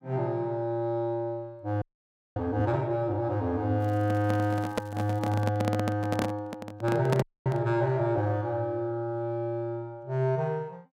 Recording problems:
frozen audio; at 2 s for 0.5 s and at 7 s
crackling; from 4 to 5.5 s; loose cable, SNR 29 dB
microphone handling noise; from 4 to 7.5 s; peak +4 dB vs average level

